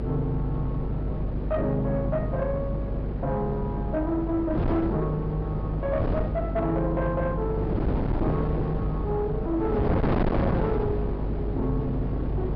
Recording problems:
treble cut off; nothing above 5.5 kHz
distorted audio; soft clipping, signal-to-distortion ratio 11 dB
hum; 50 Hz, harmonics up to 550 Hz, SNR 4 dB
wind on the microphone; below 410 Hz, SNR 1 dB

